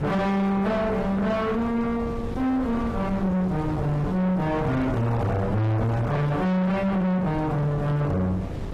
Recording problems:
codec artefacts; AAC, log-spectral distance 2 dB
distortion; soft clipping, signal-to-distortion ratio 5 dB
wind on the microphone; below 450 Hz, SNR 9 dB

